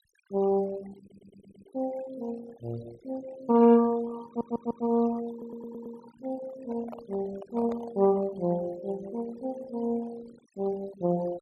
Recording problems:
noise reduction artefacts; signal-to-artefact ratio 21 dB
audio stuttering; at 1 s, at 4.5 s and at 5.5 s
microphone handling noise; from 6.5 to 8.5 s; peak -8 dB vs average level

